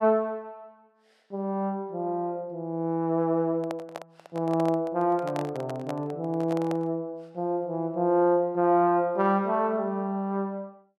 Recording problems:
microphone handling noise; from 3.5 to 7 s; peak -4 dB vs average level

